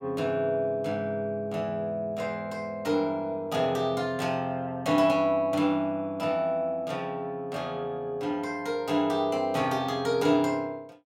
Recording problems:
none

